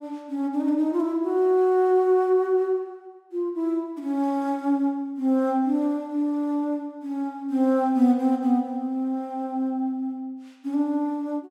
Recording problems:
none

